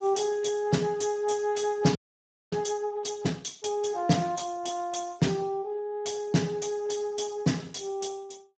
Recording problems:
codec artefacts; Speex, log-spectral distance 5 dB, nothing above 7.3 kHz
audio freezing; at 2 s for 0.5 s

